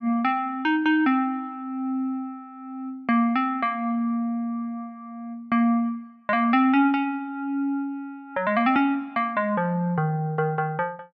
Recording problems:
none

